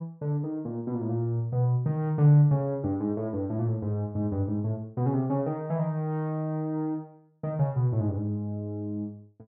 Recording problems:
none

